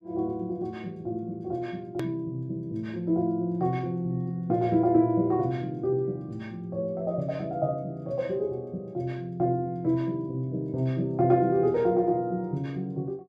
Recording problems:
edit click; at 2 s

